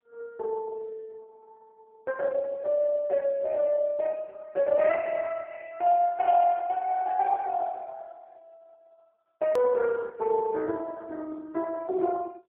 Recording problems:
phone line; 260 Hz to 3 kHz, AMR-NB
edit click; at 9.5 s

